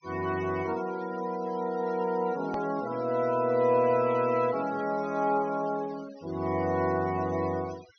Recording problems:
low-pass filter; nothing above 6.3 kHz
denoising artefacts; signal-to-artefact ratio 21 dB
click at an edit; at 2.5 s

